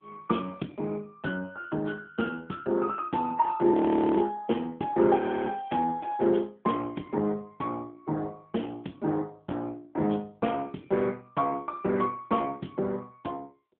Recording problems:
telephone audio; 150 Hz to 3.4 kHz, AMR-NB
frozen audio; at 3.5 s and at 5 s

